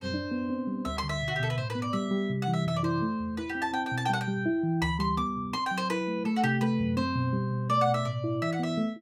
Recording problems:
none

